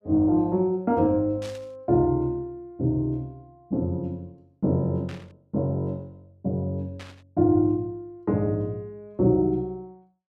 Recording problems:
static burst; at 1.5 s, at 5 s and at 7 s; peak -12 dB vs average level

